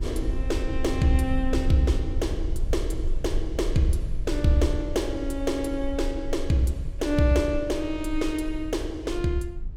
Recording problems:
rumble; below 58 Hz, SNR 6 dB

